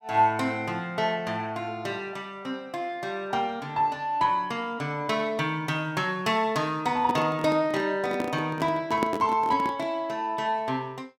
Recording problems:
microphone handling noise; from 7 to 10 s; peak +3 dB vs average level

